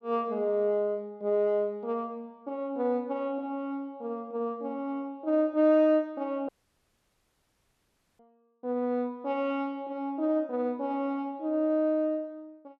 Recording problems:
dropout; at 6.5 s for 1.5 s

